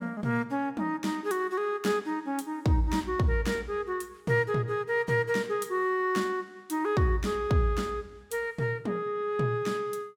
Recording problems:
none

